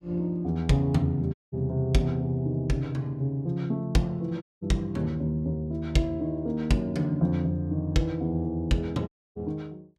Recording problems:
dropout; at 1.5 s, at 4.5 s and at 9 s

